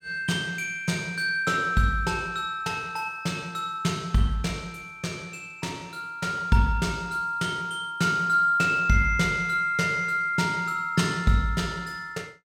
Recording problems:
none

